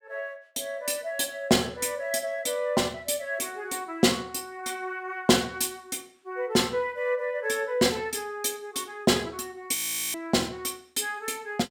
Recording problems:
frozen audio; at 10 s

